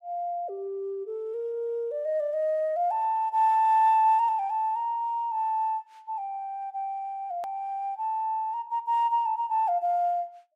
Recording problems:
edit click; at 7.5 s

